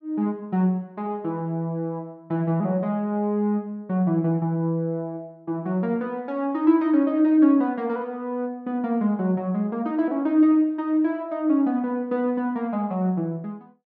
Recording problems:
none

